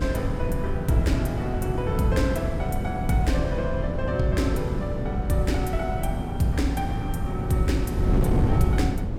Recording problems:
wind noise; below 190 Hz, SNR 1 dB

